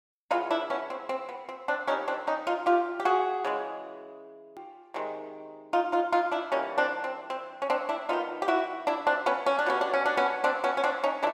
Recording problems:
click at an edit; at 4.5 s

